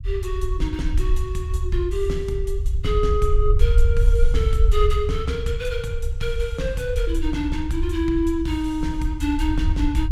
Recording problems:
low-frequency rumble; below 64 Hz, SNR -1 dB

